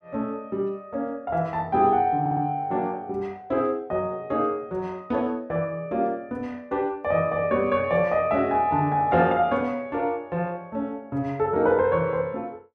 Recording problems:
audio stuttering; at 2 s

